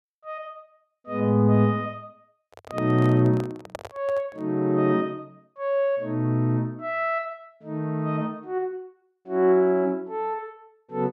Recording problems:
microphone handling noise; from 2.5 to 4.5 s; peak -6 dB vs average level

